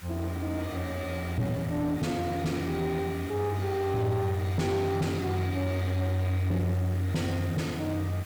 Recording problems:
distorted audio; soft clipping, signal-to-distortion ratio 10 dB
background hiss; slope -2 dB per octave, SNR 17 dB

